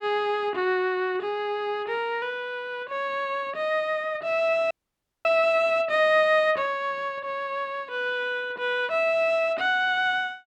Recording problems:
dropout; at 4.5 s for 0.5 s

